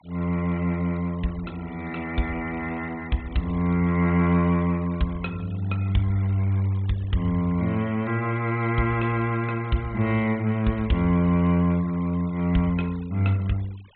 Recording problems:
low-pass filter; nothing above 4 kHz
denoising artefacts; signal-to-artefact ratio 23 dB

